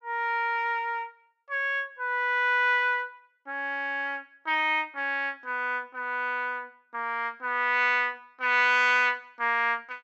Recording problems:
none

